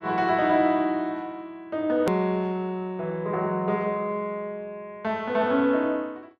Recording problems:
click at an edit; at 2 s

